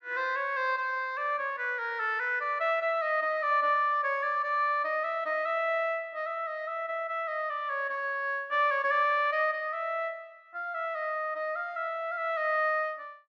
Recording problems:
none

